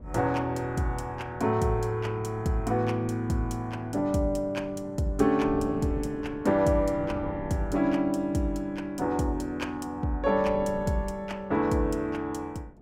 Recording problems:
wind noise; below 340 Hz, SNR 16 dB

